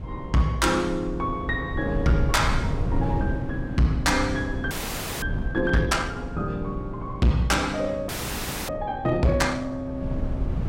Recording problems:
distorted audio; hard clipping, signal-to-distortion ratio 11 dB
wind on the microphone; below 140 Hz, SNR 7 dB
frozen audio; at 4.5 s for 0.5 s and at 8 s for 0.5 s

